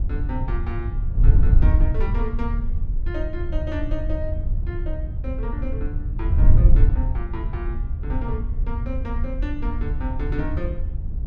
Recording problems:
wind noise; below 70 Hz, SNR -9 dB

